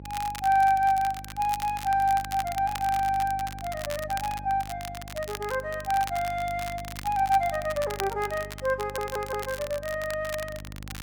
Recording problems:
mains hum; 50 Hz, harmonics up to 600 Hz, SNR 16 dB
crackling; vinyl, SNR 13 dB
stutter; at 9 s

